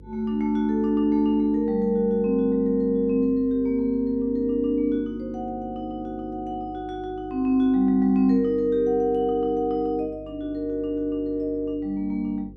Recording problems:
mains hum; 50 Hz, harmonics up to 500 Hz, SNR 22 dB

